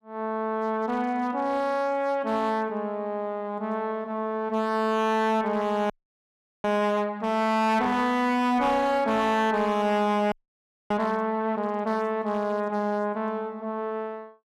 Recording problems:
distorted audio; hard clipping, signal-to-distortion ratio 10 dB
audio freezing; at 6 s for 0.5 s and at 10 s for 0.5 s

